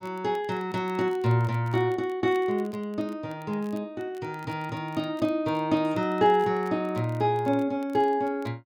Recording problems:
crackle; vinyl, SNR 29 dB

